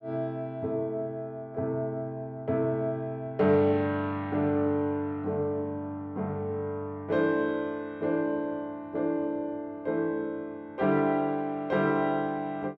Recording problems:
none

